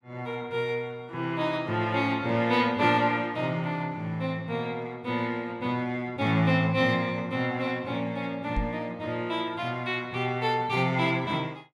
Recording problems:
microphone thump; at 8.5 s; peak +1 dB vs average level

